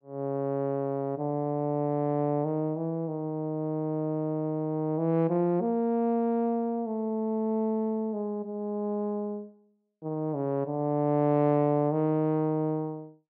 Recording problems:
none

